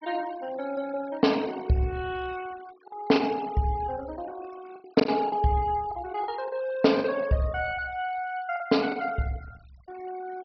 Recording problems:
treble missing; nothing above 5.5 kHz
denoising artefacts; signal-to-artefact ratio 20 dB
packet loss; 5% of the sound replaced, filled with the last packet

